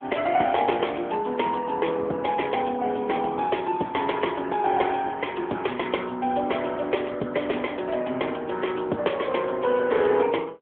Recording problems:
phone line; 220 Hz to 3.4 kHz, AMR-NB

